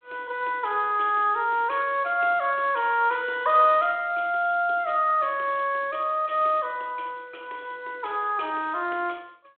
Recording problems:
telephone audio; 260 Hz to 3.7 kHz, G.726

